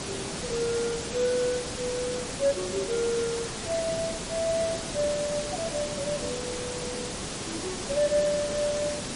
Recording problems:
codec artefacts; MP3, log-spectral distance 11 dB
background hiss; SNR 3 dB

